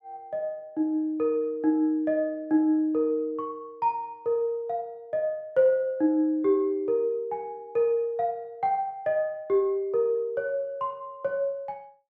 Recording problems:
none

